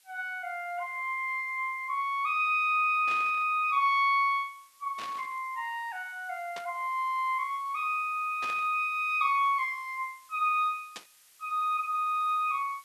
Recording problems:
background hiss; slope +3 dB per octave, SNR 29 dB
burst of static; 5 times, first at 3 s; peak -8 dB vs average level

